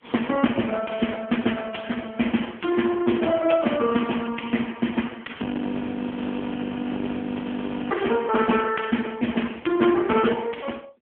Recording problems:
telephone audio; 150 Hz to 3.3 kHz, AMR-NB
audio freezing; at 5.5 s for 2.5 s

